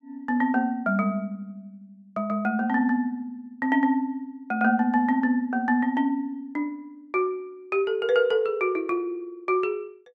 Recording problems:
none

